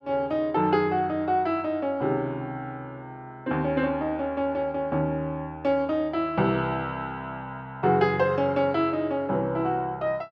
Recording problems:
none

